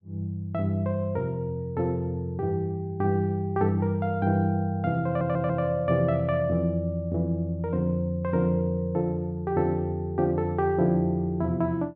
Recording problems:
audio stuttering; at 5 s

